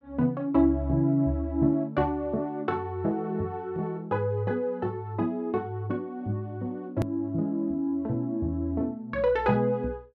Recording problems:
hard cut with a click; at 7 s

